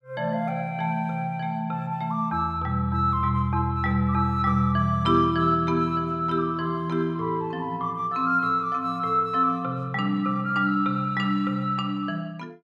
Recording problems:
none

